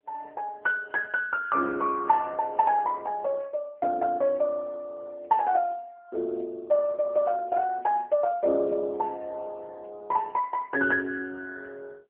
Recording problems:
phone line; 300 Hz to 3 kHz, AMR-NB

